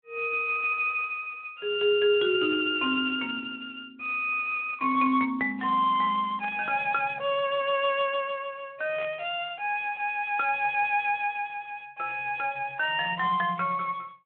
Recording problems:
phone line; 280 Hz to 3.5 kHz, Speex
burst of static; at 6.5 s and at 9 s; peak -11 dB vs average level

